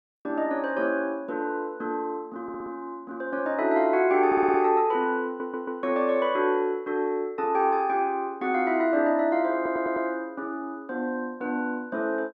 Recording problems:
stutter; 4 times, first at 2.5 s

